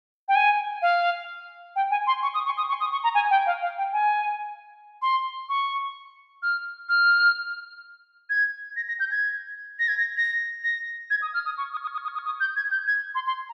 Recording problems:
stutter; at 2.5 s and at 12 s

